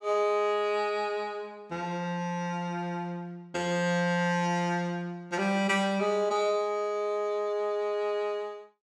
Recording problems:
none

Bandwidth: 16.5 kHz